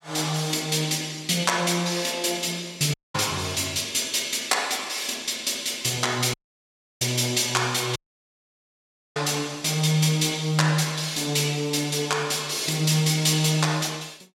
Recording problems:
audio cutting out; at 3 s, at 6.5 s for 0.5 s and at 8 s for 1 s

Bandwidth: 16 kHz